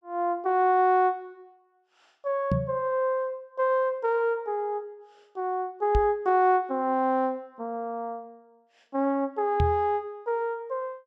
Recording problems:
microphone bump; at 2.5 s, at 6 s and at 9.5 s; peak +4 dB vs average level

